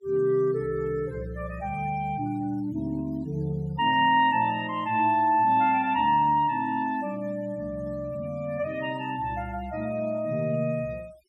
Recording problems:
noise reduction artefacts; signal-to-artefact ratio 26 dB

